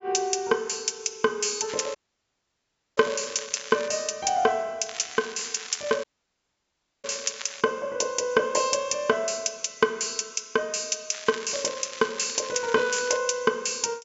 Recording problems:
treble missing; nothing above 8 kHz
crackling; from 1.5 to 4 s, from 5 to 7.5 s and from 11 to 13 s; loose cable, SNR 13 dB
audio cutting out; at 2 s for 1 s and at 6 s for 1 s

